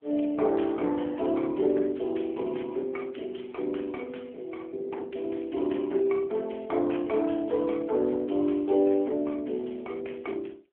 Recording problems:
phone line; 240 Hz to 3.3 kHz, AMR-NB

